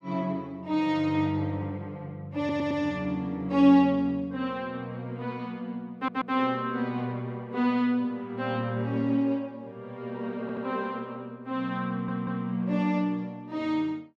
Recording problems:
stutter; 4 times, first at 2.5 s

